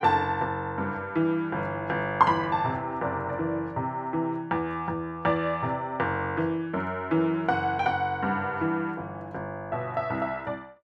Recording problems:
none

